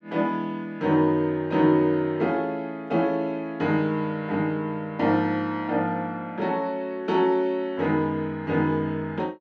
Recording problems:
none

